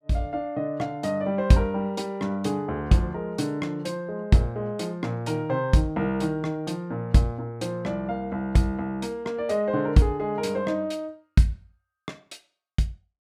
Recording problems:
none

